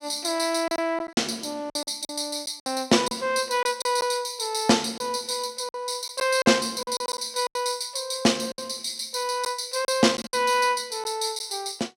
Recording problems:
lost packets; 8% of the sound replaced, filled with silence

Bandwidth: 16 kHz